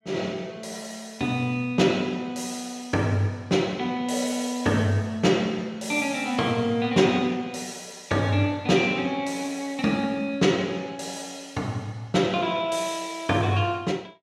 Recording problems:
none

